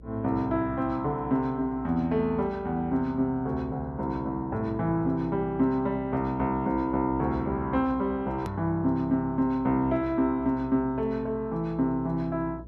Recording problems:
hum; 60 Hz, harmonics up to 540 Hz, SNR 19 dB
click at an edit; at 8.5 s

